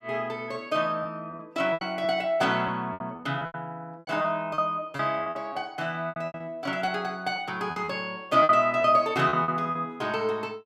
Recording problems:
packet loss; 12% of the sound replaced, filled with repeated pitch periods

